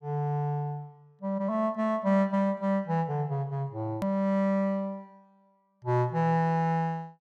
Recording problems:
click at an edit; at 4 s

